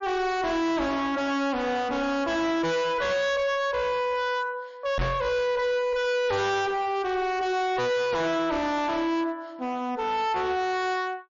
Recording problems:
low-pass filter; nothing above 7.1 kHz
lossy codec; MP3, log-spectral distance 2 dB
distorted audio; hard clipping, uneven, signal-to-distortion ratio 5 dB
microphone thump; at 5 s; peak +2 dB vs average level

